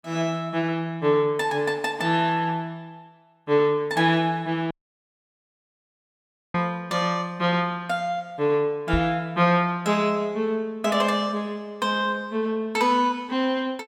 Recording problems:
dropout; at 4.5 s for 2 s
microphone bump; at 9 s; peak +1 dB vs average level

